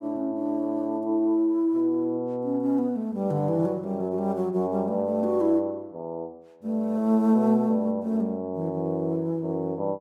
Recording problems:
none

